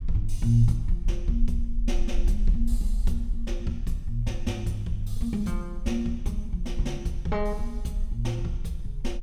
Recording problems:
rumble; below 42 Hz, SNR 3 dB

